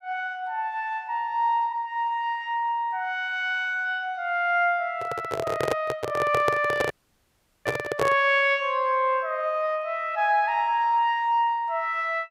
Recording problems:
microphone handling noise; from 5 to 8.5 s; peak +3 dB vs average level
dropout; at 7 s for 1 s

